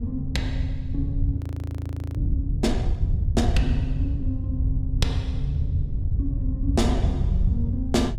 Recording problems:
wind noise; below 94 Hz, SNR -3 dB
audio freezing; at 1.5 s for 1 s

